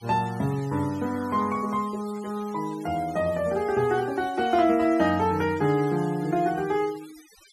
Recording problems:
denoising artefacts; signal-to-artefact ratio 20 dB

